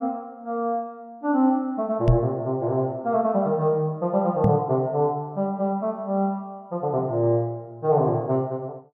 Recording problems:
knock on the microphone; at 2 s and at 4.5 s; peak +7 dB vs average level

